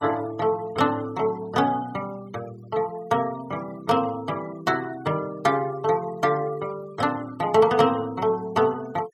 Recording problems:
noise reduction artefacts; signal-to-artefact ratio 22 dB

